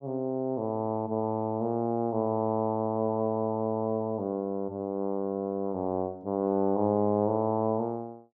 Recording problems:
treble cut off; nothing above 8 kHz

